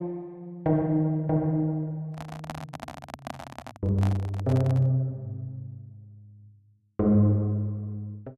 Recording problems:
handling noise; from 2 to 5 s; peak -5 dB vs average level

